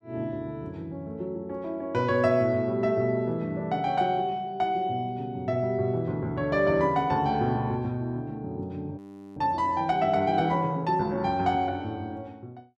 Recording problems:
frozen audio; at 9 s

